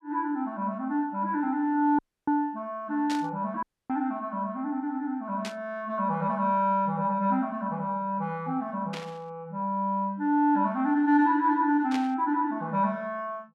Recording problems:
dropout; at 2 s and at 3.5 s
static burst; 4 times, first at 3 s; peak -4 dB vs average level

